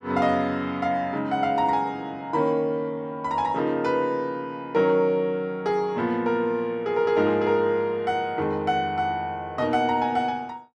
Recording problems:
none

